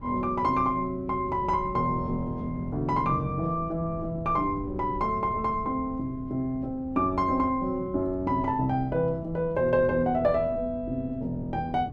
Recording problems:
wind noise; below 220 Hz, SNR 14 dB

